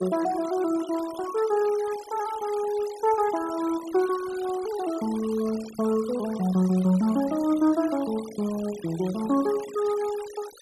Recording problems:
denoising artefacts; signal-to-artefact ratio 17 dB

